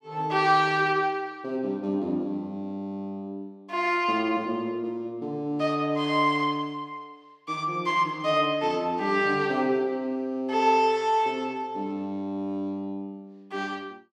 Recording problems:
none

